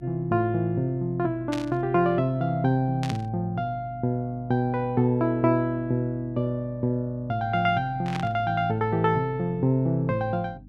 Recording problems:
hum; 50 Hz, harmonics up to 300 Hz, SNR 23 dB
static burst; at 1.5 s, at 3 s and at 8 s; peak -5 dB vs average level

